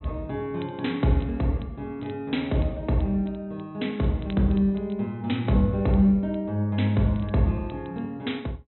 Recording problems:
treble missing; nothing above 4 kHz
crackling; vinyl, SNR 30 dB

